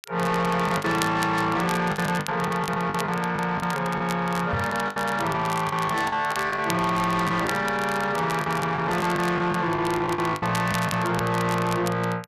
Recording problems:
distortion; soft clipping, signal-to-distortion ratio 11 dB
crackling; vinyl, SNR 14 dB
packet loss; 10% of the sound replaced, filled with the last packet
knock on the microphone; at 4.5 s; peak -1 dB vs average level

